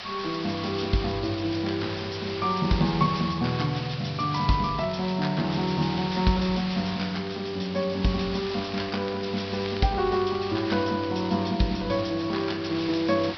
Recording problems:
treble cut off; nothing above 5.5 kHz
hiss; SNR 11 dB
crackle; vinyl, SNR 22 dB

